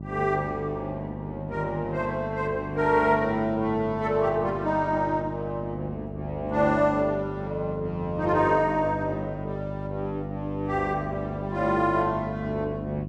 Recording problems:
hum; 50 Hz, harmonics up to 700 Hz, SNR 9 dB

